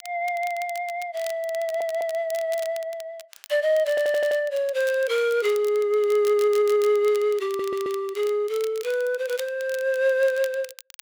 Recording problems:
crackling; vinyl, SNR 19 dB
audio stuttering; 4 times, first at 1.5 s

